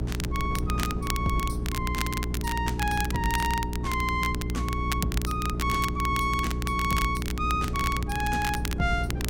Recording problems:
mains hum; 60 Hz, harmonics up to 420 Hz, SNR 2 dB
wind noise; below 190 Hz, SNR 8 dB
crackle; vinyl, SNR 7 dB

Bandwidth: 16.5 kHz